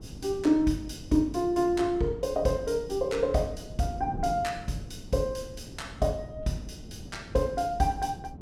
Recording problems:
wind on the microphone; below 250 Hz, SNR 15 dB

